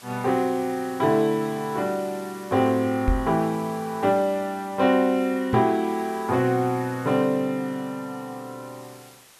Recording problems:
hiss; slope -1 dB per octave, SNR 22 dB
microphone bump; at 3 s and at 5.5 s; peak +3 dB vs average level

